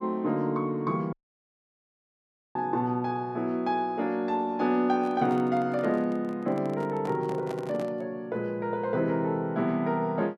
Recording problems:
audio cutting out; at 1 s for 1.5 s
microphone handling noise; from 5 to 8 s; peak -8 dB vs average level

